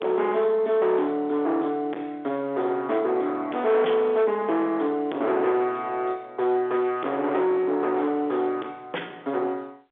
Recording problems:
phone line; 300 Hz to 3.6 kHz, G.711
distortion; soft clipping, signal-to-distortion ratio 8 dB

